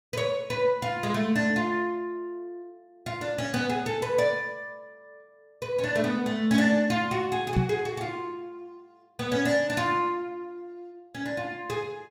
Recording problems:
microphone thump; at 7.5 s; peak +7 dB vs average level

